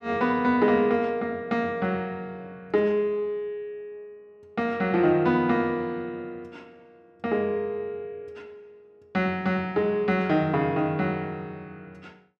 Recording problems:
none

